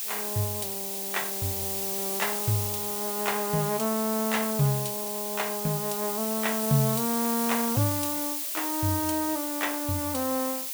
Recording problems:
hiss; slope +5 dB per octave, SNR 0 dB

